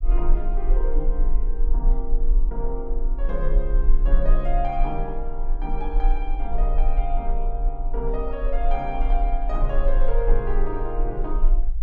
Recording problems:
rumble; below 34 Hz, strongest tone 22 Hz, SNR -5 dB

